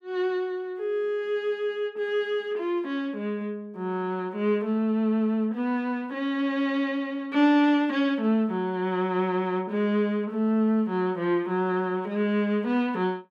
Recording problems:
none

